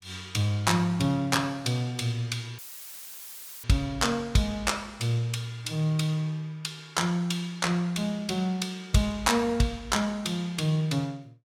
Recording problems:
dropout; at 2.5 s for 1 s; filled with static

